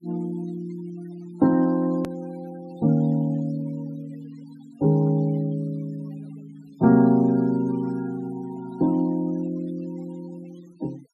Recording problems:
noise reduction artefacts; signal-to-artefact ratio 25 dB
hard cut with a click; at 2 s

